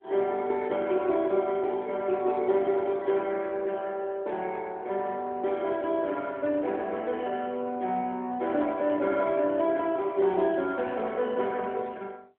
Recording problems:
phone line; 320 Hz to 3.5 kHz, AMR-NB

